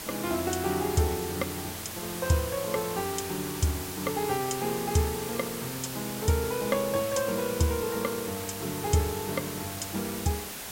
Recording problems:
background hiss; slope -2 dB per octave, SNR 6 dB

